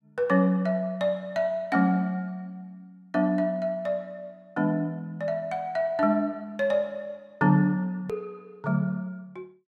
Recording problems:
hard cut with a click; at 8 s

